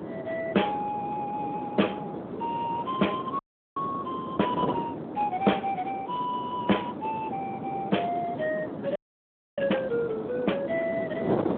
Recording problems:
telephone audio; 190 Hz to 3.4 kHz, Speex
wind noise; below 580 Hz, SNR 5 dB
audio freezing; at 3.5 s and at 9 s for 0.5 s

